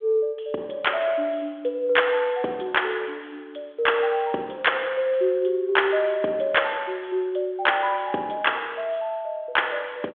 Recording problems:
phone line; 280 Hz to 3.5 kHz, G.726

